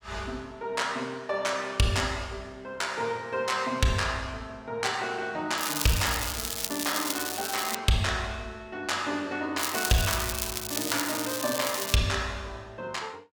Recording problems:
crackle; from 5.5 to 8 s and from 9.5 to 12 s; loose cable, SNR 2 dB

